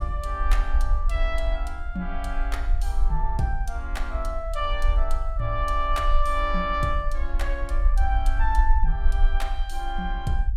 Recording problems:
low-frequency rumble; below 48 Hz, SNR -2 dB

